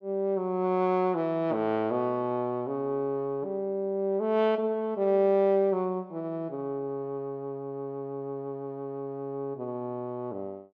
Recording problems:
none

